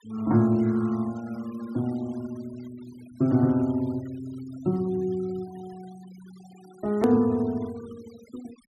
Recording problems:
denoising artefacts; signal-to-artefact ratio 25 dB
hard cut with a click; at 7 s

